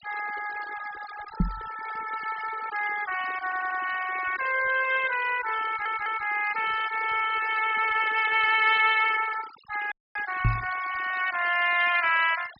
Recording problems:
treble missing; nothing above 5.5 kHz
denoising artefacts; signal-to-artefact ratio 13 dB
microphone thump; at 1.5 s and at 10 s; peak +5 dB vs average level
audio stuttering; at 3.5 s and at 5.5 s
dropout; at 10 s

